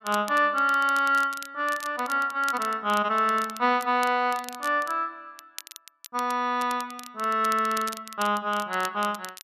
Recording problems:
crackling; vinyl, SNR 17 dB

